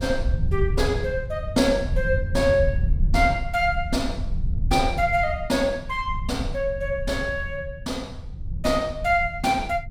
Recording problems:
low-frequency rumble; below 86 Hz, SNR 5 dB

